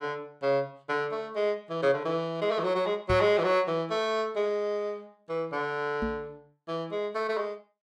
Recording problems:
knock on the microphone; at 3 s and at 6 s; peak 0 dB vs average level

